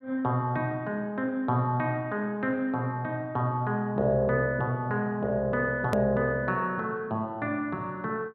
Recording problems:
hard cut with a click; at 6 s

